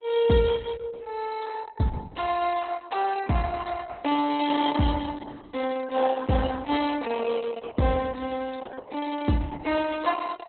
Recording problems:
lossy codec; Opus, log-spectral distance 5 dB, nothing above 3.9 kHz

